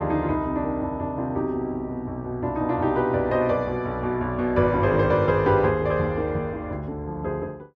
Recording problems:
none

